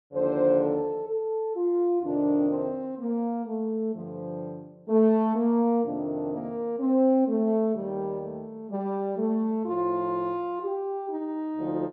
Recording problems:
none

